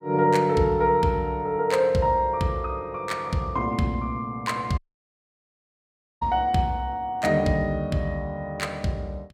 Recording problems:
dropout; at 5 s for 1.5 s

